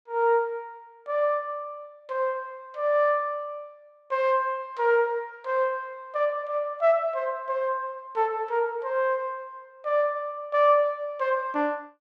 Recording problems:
none

